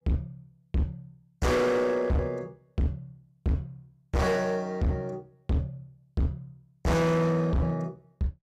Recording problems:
distorted audio; hard clipping, signal-to-distortion ratio 6 dB

